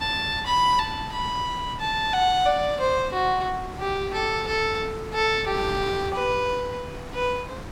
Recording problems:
wind noise; below 930 Hz, SNR 13 dB

